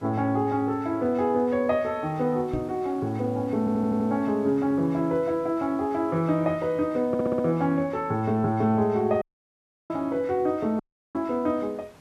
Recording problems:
hiss; slope -5 dB per octave, SNR 27 dB
knock on the microphone; at 2.5 s; peak -3 dB vs average level
audio stuttering; at 3.5 s and at 7 s
dropout; at 9 s for 0.5 s and at 11 s

